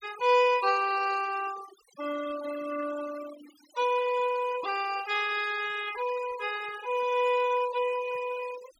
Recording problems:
denoising artefacts; signal-to-artefact ratio 14 dB

